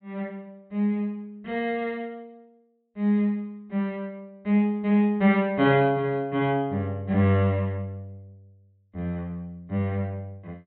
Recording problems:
treble missing; nothing above 4 kHz

